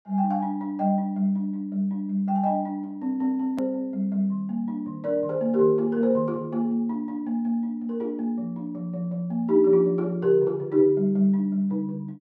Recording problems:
hard cut with a click; at 3.5 s

